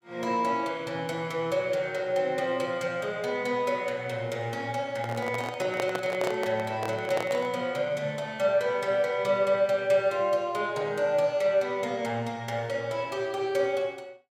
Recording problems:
handling noise; from 5 to 7.5 s; peak +1 dB vs average level

